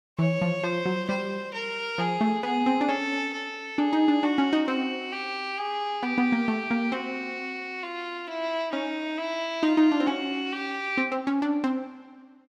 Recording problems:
none

